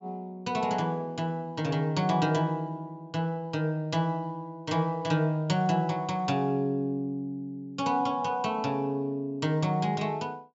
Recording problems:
treble missing; nothing above 8 kHz

